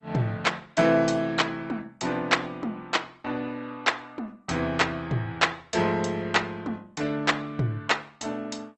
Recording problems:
lossy codec; MP2, then Opus, log-spectral distance 4 dB, nothing above 8 kHz

